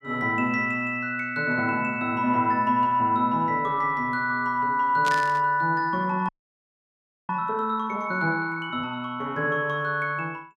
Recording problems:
static burst; at 5 s; peak -3 dB vs average level
frozen audio; at 6.5 s for 1 s

